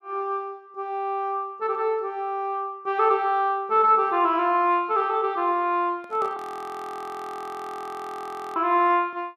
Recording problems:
microphone handling noise; at 6 s; peak -12 dB vs average level
audio freezing; at 6.5 s for 2 s

